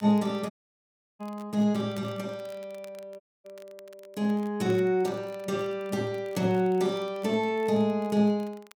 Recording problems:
crackling; vinyl, SNR 28 dB
audio cutting out; at 0.5 s for 0.5 s and at 3 s

